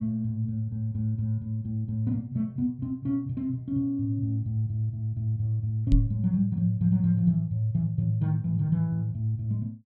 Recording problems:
microphone thump; at 6 s; peak +8 dB vs average level

